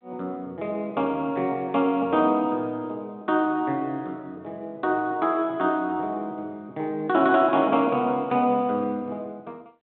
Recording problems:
phone line; 170 Hz to 3.7 kHz, G.726

